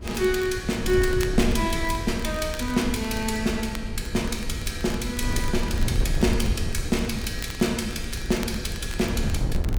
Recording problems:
wind noise; below 100 Hz, SNR 5 dB
crackle; vinyl, SNR 17 dB

